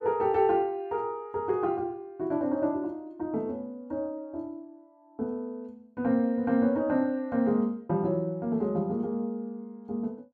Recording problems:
none

